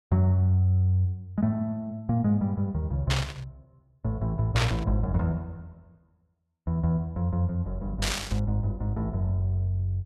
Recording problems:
burst of static; at 3 s, at 4.5 s and at 8 s; peak +3 dB vs average level

